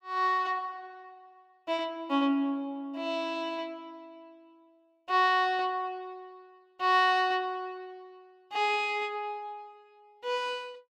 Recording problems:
none

